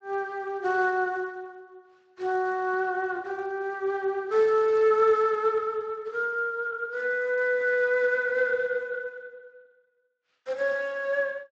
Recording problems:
codec artefacts; Speex, log-spectral distance 2 dB

